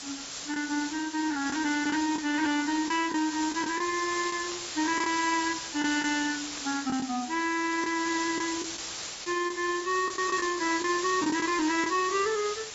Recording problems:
lossy codec; AAC, log-spectral distance 18 dB, nothing above 7.1 kHz
distortion; soft clipping, signal-to-distortion ratio 11 dB
background hiss; slope +1 dB per octave, SNR 6 dB
lost packets; 5% of the sound replaced, filled with the last packet
static burst; at 1.5 s, at 4.5 s and at 6.5 s; peak -11 dB vs average level

